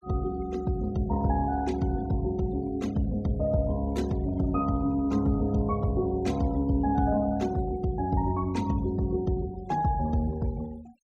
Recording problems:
denoising artefacts; signal-to-artefact ratio 22 dB

